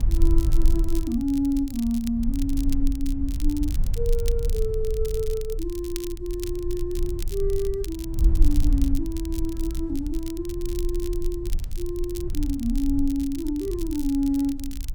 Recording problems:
low-frequency rumble; below 50 Hz, strongest tone 20 Hz, SNR 2 dB
crackling; vinyl, SNR 15 dB

